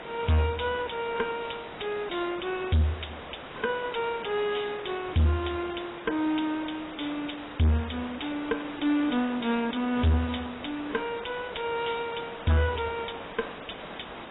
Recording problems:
lossy codec; AAC, log-spectral distance 12 dB, nothing above 3.8 kHz
distortion; hard clipping, uneven, signal-to-distortion ratio 7 dB
hiss; SNR 12 dB

